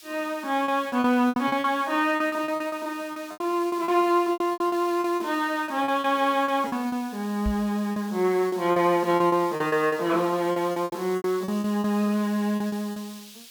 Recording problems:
background hiss; SNR 20 dB
packet loss; 15% of the sound replaced, filled with repeated pitch periods
microphone bump; at 7.5 s; peak -1 dB vs average level

